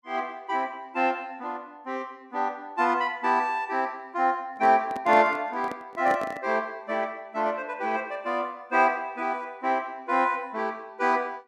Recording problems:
microphone handling noise; from 4.5 to 6.5 s; peak -4 dB vs average level

